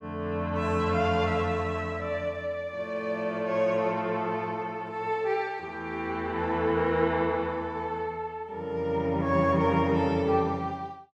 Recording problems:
none

